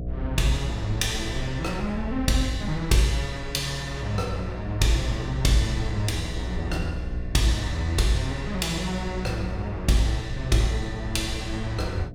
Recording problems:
electrical hum; 60 Hz, harmonics up to 720 Hz, SNR 9 dB
rumble; below 80 Hz, SNR 12 dB

